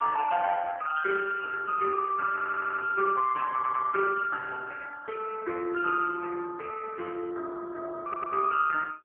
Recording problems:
telephone audio; 300 Hz to 2 kHz, AMR-NB
audio stuttering; at 2.5 s, at 3.5 s and at 8 s

